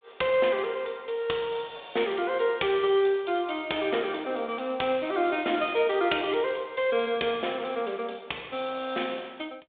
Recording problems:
phone line; 280 Hz to 3.6 kHz, G.726

